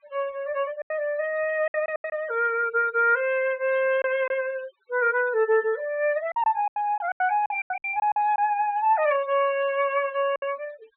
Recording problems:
low-pass filter; nothing above 4 kHz
noise reduction artefacts; signal-to-artefact ratio 22 dB
lost packets; 8% of the sound replaced, filled with silence

